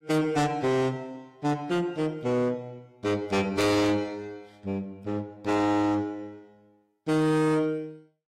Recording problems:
lossy compression; AAC, log-spectral distance 2 dB, nothing above 16 kHz
distortion; soft clipping, signal-to-distortion ratio 6 dB

